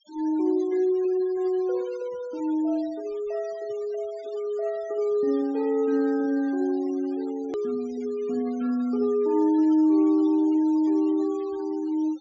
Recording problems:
treble missing; nothing above 7.4 kHz
noise reduction artefacts; signal-to-artefact ratio 25 dB
edit click; at 7.5 s

